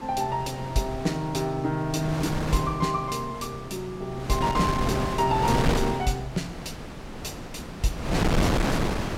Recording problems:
wind on the microphone; below 870 Hz, SNR 2 dB

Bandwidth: 16.5 kHz